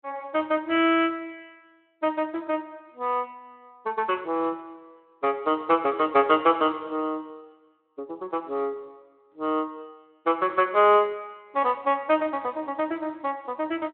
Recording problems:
phone line; 260 Hz to 3.3 kHz, Speex

